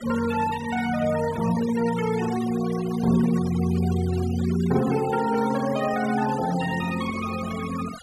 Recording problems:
noise reduction artefacts; signal-to-artefact ratio 15 dB

